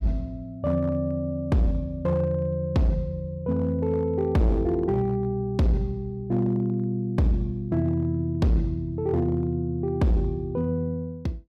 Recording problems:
distortion; hard clipping, signal-to-distortion ratio 8 dB

